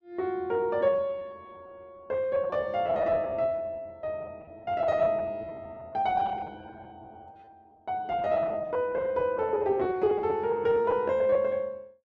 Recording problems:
packet loss; 16% of the sound replaced, filled with repeated pitch periods

